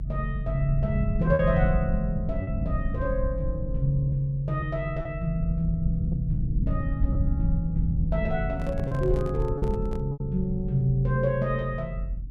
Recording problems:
rumble; below 110 Hz, SNR 2 dB
lost packets; 3% of the sound replaced, filled with repeated pitch periods
handling noise; from 8.5 to 10 s; peak -8 dB vs average level

